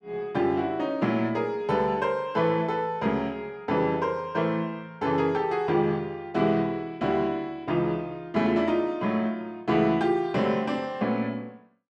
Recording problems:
none

